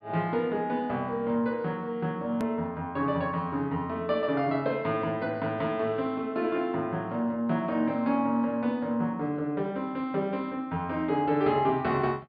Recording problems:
treble missing; nothing above 5.1 kHz
hard cut with a click; at 2.5 s

